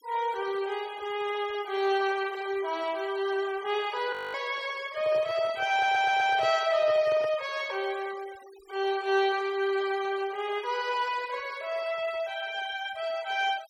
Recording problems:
noise reduction artefacts; signal-to-artefact ratio 20 dB
audio freezing; at 4 s
handling noise; from 5 to 7.5 s; peak -8 dB vs average level
audio stuttering; at 5.5 s

